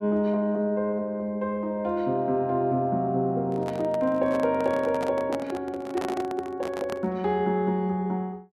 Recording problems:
microphone handling noise; from 3.5 to 7 s; peak -4 dB vs average level

